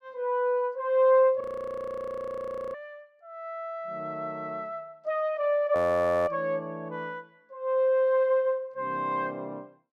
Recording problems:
frozen audio; at 1.5 s for 1.5 s and at 6 s for 0.5 s

